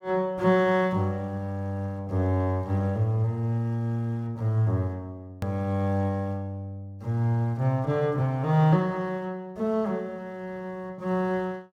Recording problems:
hard cut with a click; at 5.5 s

